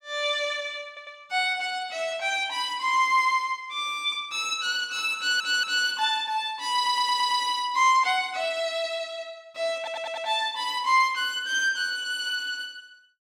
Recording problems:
audio stuttering; 4 times, first at 1 s

